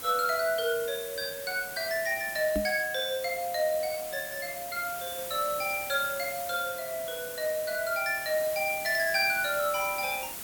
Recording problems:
background hiss; slope -1 dB per octave, SNR 8 dB
knock on the microphone; at 2.5 s; peak 0 dB vs average level

